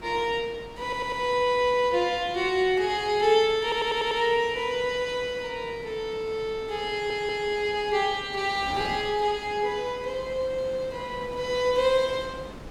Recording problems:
wind on the microphone; below 840 Hz, SNR 18 dB
stutter; at 1 s, at 3.5 s and at 7 s

